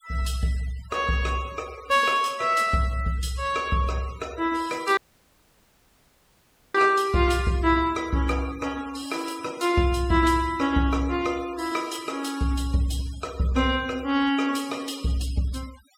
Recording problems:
noise reduction artefacts; signal-to-artefact ratio 20 dB
audio cutting out; at 5 s for 2 s

